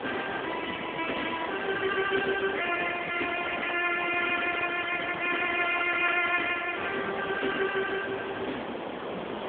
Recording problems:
telephone audio; 280 Hz to 3.4 kHz, AMR-NB
background hiss; SNR 7 dB

